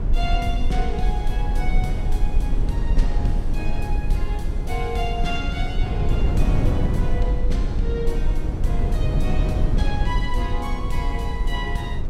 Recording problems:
low-frequency rumble; below 42 Hz, SNR -3 dB
wind noise; below 160 Hz, SNR -3 dB

